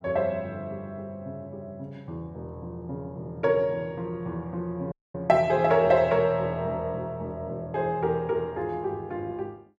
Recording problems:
dropout; at 5 s

